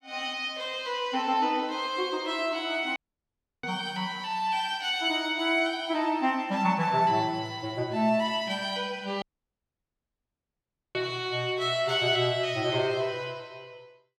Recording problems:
dropout; at 3 s for 0.5 s and at 9 s for 1.5 s

